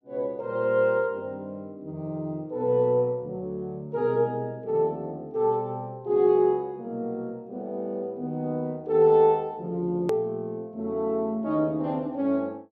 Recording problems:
edit click; at 10 s

